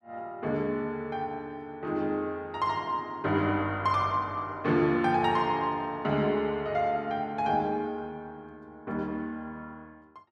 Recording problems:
none

